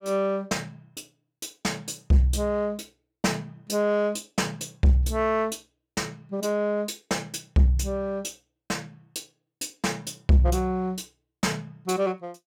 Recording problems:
distortion; soft clipping, signal-to-distortion ratio 12 dB

